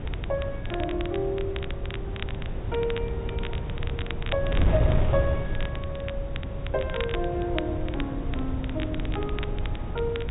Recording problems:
treble missing; nothing above 4 kHz
wind noise; below 130 Hz, SNR -1 dB
crackling; vinyl, SNR 9 dB

